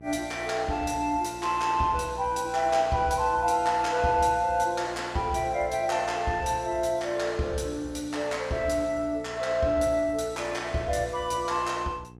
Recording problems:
mains hum; 60 Hz, harmonics up to 900 Hz, SNR 21 dB

